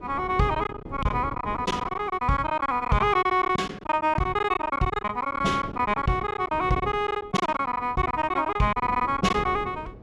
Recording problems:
wind on the microphone; below 420 Hz, SNR 16 dB
packet loss; 15% of the sound replaced, filled with silence

